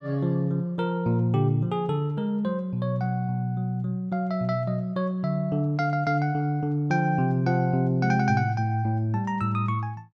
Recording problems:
none

